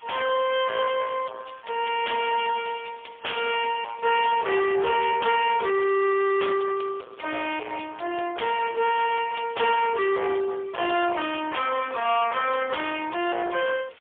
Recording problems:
telephone audio; 370 Hz to 3.4 kHz, AMR-NB, then MP3
distorted audio; soft clipping, signal-to-distortion ratio 8 dB
hiss; SNR 30 dB

